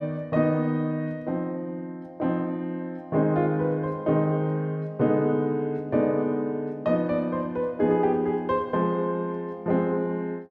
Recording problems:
none

